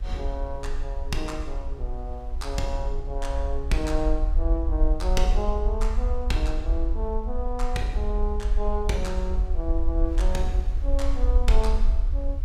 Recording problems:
hum; 60 Hz, harmonics up to 1.9 kHz, SNR 25 dB
rumble; below 52 Hz, SNR -4 dB
wind noise; below 2.4 kHz, SNR 25 dB

